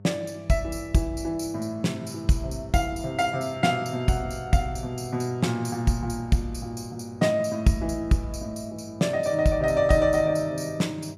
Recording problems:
electrical hum; 50 Hz, harmonics up to 700 Hz, SNR 21 dB

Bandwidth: 15.5 kHz